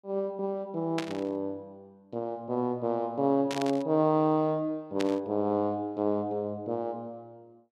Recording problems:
burst of static; at 1 s, at 3.5 s and at 5 s; peak -1 dB vs average level

